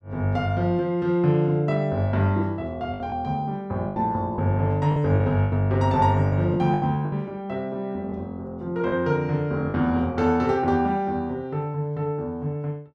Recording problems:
lost packets; 5% of the sound replaced, filled with the last packet

